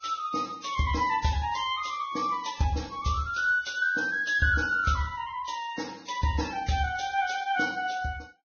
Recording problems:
lossy codec; Vorbis, log-spectral distance 5 dB, nothing above 6.5 kHz

